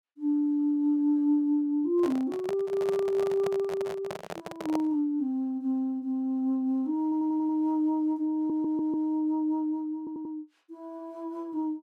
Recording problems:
handling noise; from 2 to 5 s; peak -2 dB vs average level
audio stuttering; at 7 s, at 8.5 s and at 10 s

